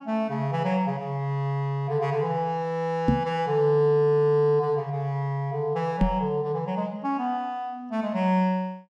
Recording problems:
knock on the microphone; at 3 s and at 6 s; peak +8 dB vs average level

